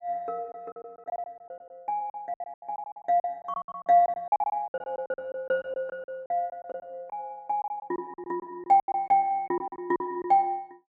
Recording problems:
lost packets; 17% of the sound replaced, filled with silence

